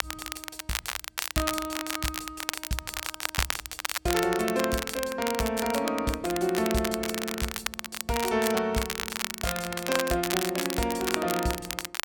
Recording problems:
crackling; vinyl, SNR 3 dB

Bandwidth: 17.5 kHz